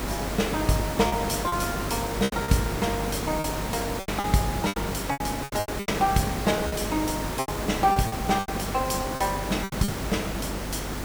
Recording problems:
electrical hum; 50 Hz, harmonics up to 400 Hz, SNR 10 dB
hiss; slope -5 dB per octave, SNR 4 dB
packet loss; 11% of the sound replaced, filled with repeated pitch periods

